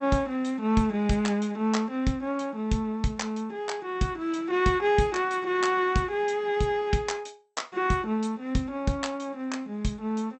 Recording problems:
codec artefacts; MP2, log-spectral distance 2 dB, nothing above 8 kHz

